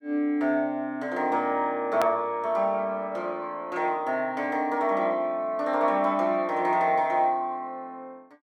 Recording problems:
click at an edit; at 2 s

